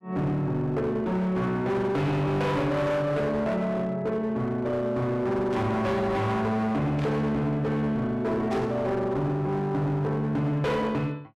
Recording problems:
distortion; hard clipping, uneven, signal-to-distortion ratio 8 dB
static burst; at 5.5 s, at 7 s and at 8.5 s; peak -11 dB vs average level

